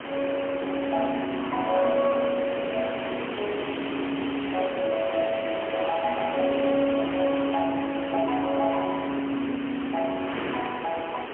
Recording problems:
telephone audio; 300 Hz to 3.4 kHz, AMR-NB, then MP3
hiss; SNR 11 dB
wind on the microphone; below 2.3 kHz, SNR 9 dB

